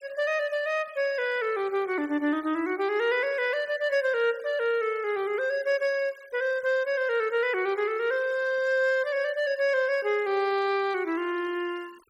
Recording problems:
denoising artefacts; signal-to-artefact ratio 25 dB

